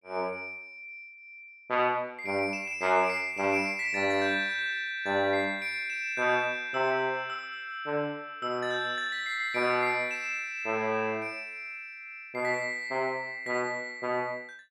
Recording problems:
none

